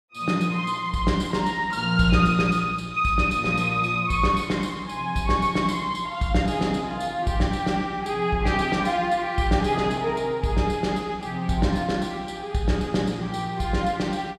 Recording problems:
none

